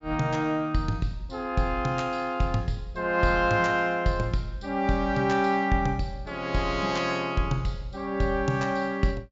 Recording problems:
low-pass filter; nothing above 7.5 kHz

